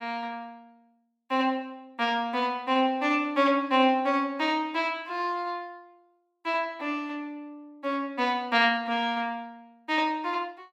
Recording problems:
none

